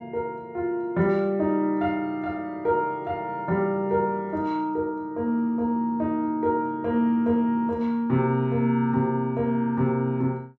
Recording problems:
none

